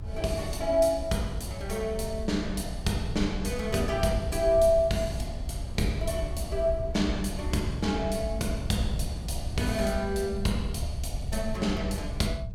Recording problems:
low-frequency rumble; below 78 Hz, SNR 8 dB
wind noise; below 130 Hz, SNR 14 dB

